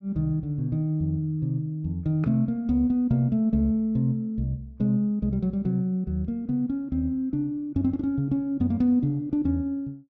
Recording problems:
none

